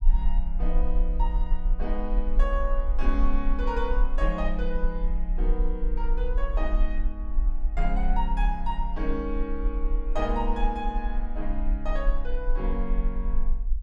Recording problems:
low-frequency rumble; below 40 Hz, SNR -4 dB

